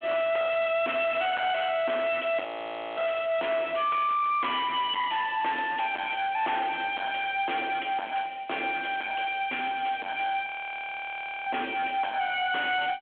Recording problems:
phone line; 260 Hz to 3.4 kHz, G.726
distorted audio; hard clipping, signal-to-distortion ratio 6 dB
frozen audio; at 2.5 s for 0.5 s and at 10 s for 1 s

